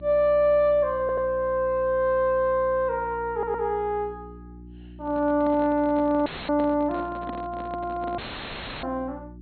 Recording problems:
treble cut off; nothing above 4.3 kHz
electrical hum; 60 Hz, harmonics up to 360 Hz, SNR 19 dB
stutter; at 1 s and at 3.5 s
microphone handling noise; from 5 to 8 s; peak -8 dB vs average level
dropout; at 6.5 s and at 8 s for 0.5 s; filled with static

